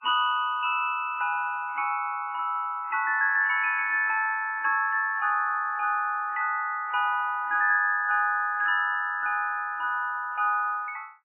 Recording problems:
lossy codec; MP3, log-spectral distance 2 dB, nothing above 2.7 kHz

